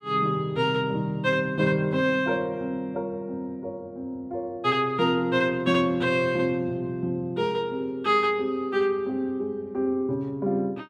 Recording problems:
none

